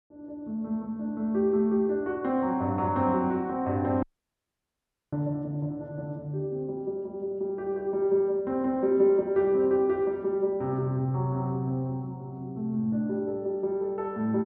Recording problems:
dropout; at 4 s for 1 s

